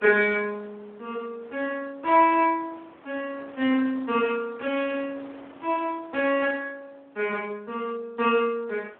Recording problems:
phone line; 240 Hz to 3.4 kHz, Speex
wind on the microphone; below 1.6 kHz, SNR 24 dB

